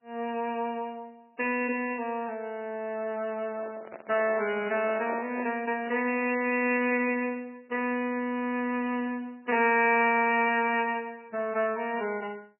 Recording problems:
lossy codec; MP3, log-spectral distance 4 dB, nothing above 2.4 kHz
microphone handling noise; from 3.5 to 5.5 s; peak -4 dB vs average level

